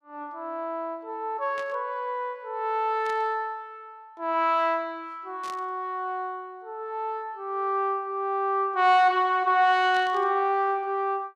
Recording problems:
burst of static; 4 times, first at 1.5 s; peak -12 dB vs average level

